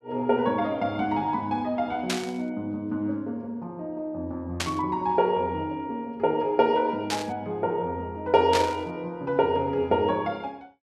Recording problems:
burst of static; 4 times, first at 2 s; peak +3 dB vs average level

